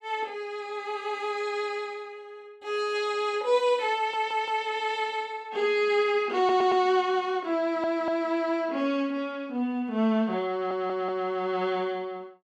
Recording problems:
audio stuttering; 4 times, first at 4 s

